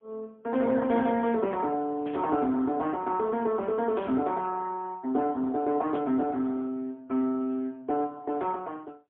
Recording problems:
telephone audio; 190 Hz to 2.4 kHz, AMR-NB, then MP3
static burst; at 2 s, at 4 s and at 6 s; peak -15 dB vs average level

